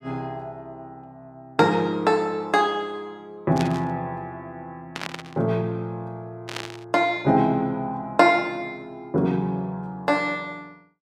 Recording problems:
static burst; at 3.5 s, at 5 s and at 6.5 s; peak -3 dB vs average level

